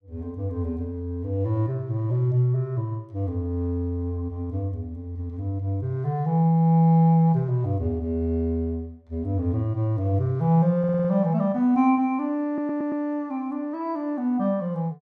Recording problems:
stutter; at 11 s and at 12 s

